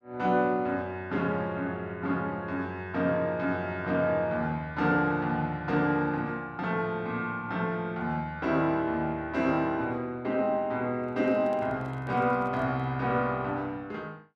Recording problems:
microphone handling noise; from 11 to 13 s; peak -12 dB vs average level

